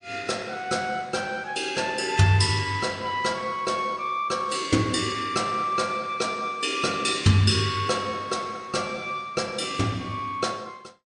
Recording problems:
lossy compression; MP3, log-spectral distance 3 dB, nothing above 9.5 kHz

